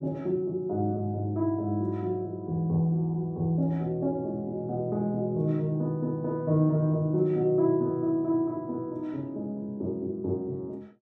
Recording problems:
none

